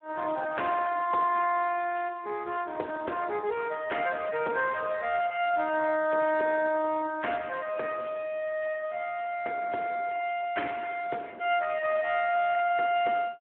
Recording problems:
telephone audio; 300 Hz to 3 kHz, Speex

